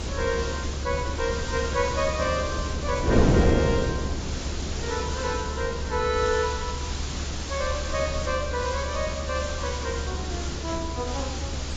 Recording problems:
codec artefacts; AAC, log-spectral distance 13 dB
background hiss; slope 0 dB per octave, SNR 6 dB
low-frequency rumble; below 74 Hz, strongest tone 70 Hz, SNR 5 dB
wind noise; below 380 Hz, SNR 2 dB

